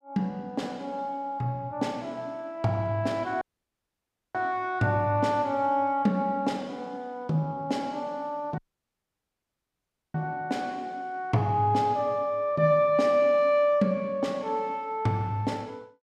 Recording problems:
audio cutting out; at 3.5 s for 1 s and at 8.5 s for 1.5 s

